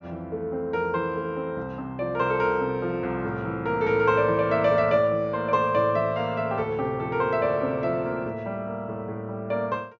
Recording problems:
treble missing; nothing above 6.8 kHz

